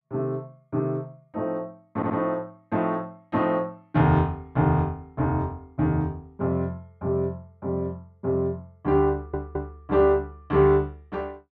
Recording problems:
audio stuttering; at 2 s and at 9 s

